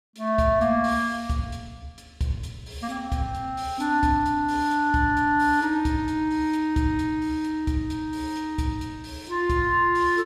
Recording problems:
none

